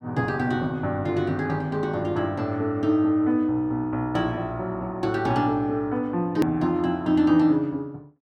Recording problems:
edit click; at 6.5 s

